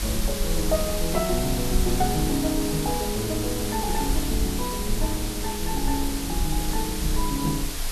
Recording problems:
hiss; slope -1 dB per octave, SNR 3 dB
low-frequency rumble; below 52 Hz, strongest tone 20 Hz, SNR 5 dB

